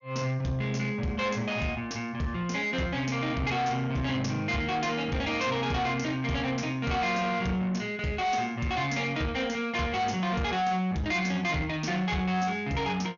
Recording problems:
treble cut off; nothing above 6.8 kHz
distortion; soft clipping, signal-to-distortion ratio 10 dB

